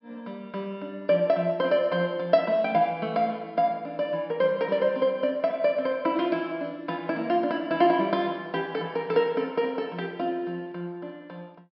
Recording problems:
treble missing; nothing above 5.4 kHz

